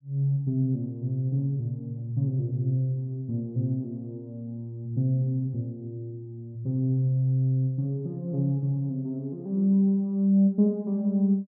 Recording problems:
none

